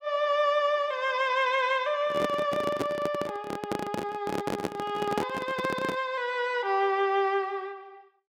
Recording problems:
handling noise; from 2 to 6 s; peak +2 dB vs average level

